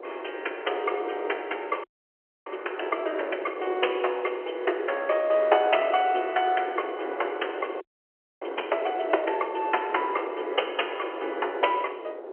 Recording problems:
phone line; 320 Hz to 3.2 kHz, G.711
wind noise; below 600 Hz, SNR 8 dB
frozen audio; at 2 s for 0.5 s and at 8 s for 0.5 s

